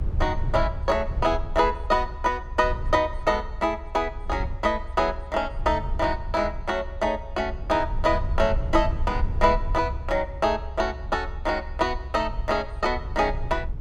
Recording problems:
low-frequency rumble; below 70 Hz, strongest tone 24 Hz, SNR 8 dB

